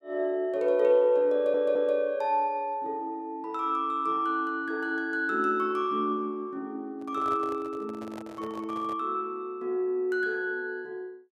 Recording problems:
audio stuttering; at 1.5 s
microphone handling noise; from 7 to 9 s; peak -10 dB vs average level

